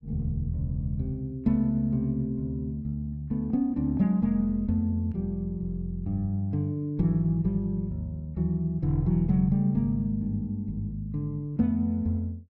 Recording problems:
none

